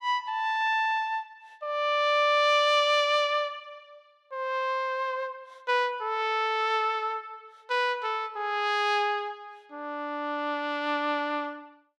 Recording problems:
none

